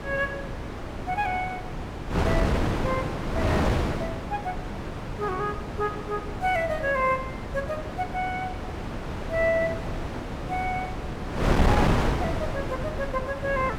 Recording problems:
wind on the microphone; below 740 Hz, SNR 0 dB

